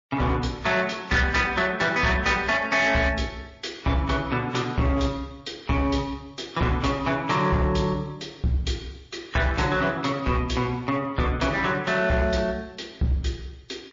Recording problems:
codec artefacts; MP3, log-spectral distance 3 dB, nothing above 6.7 kHz
distortion; hard clipping, uneven, signal-to-distortion ratio 12 dB

